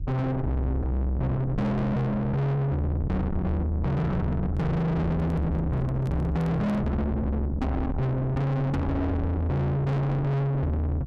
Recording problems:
distorted audio; soft clipping, signal-to-distortion ratio 6 dB
low-frequency rumble; below 360 Hz, SNR 6 dB
microphone handling noise; from 4.5 to 7 s; peak -4 dB vs average level

